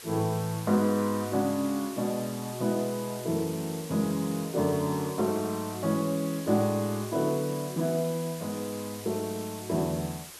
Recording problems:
hiss; slope 0 dB per octave, SNR 13 dB

